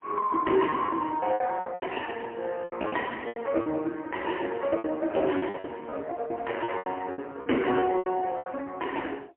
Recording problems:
telephone audio; 260 Hz to 3 kHz, AMR-NB, then MP3
packet loss; 13% of the sound replaced, filled with repeated pitch periods

